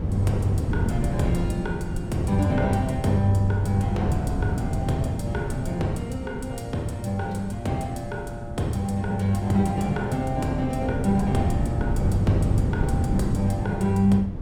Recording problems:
wind noise; below 200 Hz, SNR 3 dB

